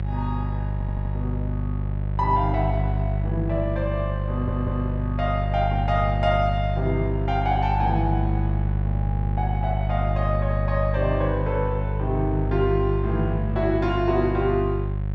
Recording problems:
mains hum; 50 Hz, harmonics up to 550 Hz, SNR 0 dB
audio stuttering; at 0.5 s and at 4.5 s

